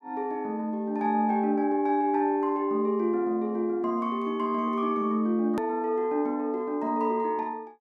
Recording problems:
edit click; at 5.5 s

